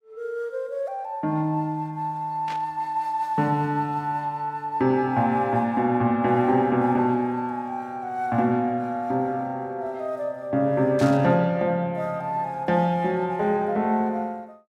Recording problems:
burst of static; at 2.5 s and at 11 s; peak -9 dB vs average level

